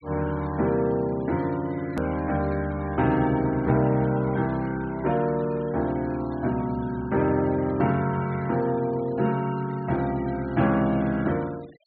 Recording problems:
low-pass filter; nothing above 4.3 kHz
noise reduction artefacts; signal-to-artefact ratio 23 dB
hard cut with a click; at 2 s

